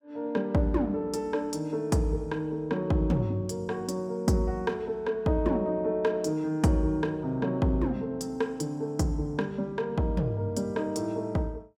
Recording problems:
none

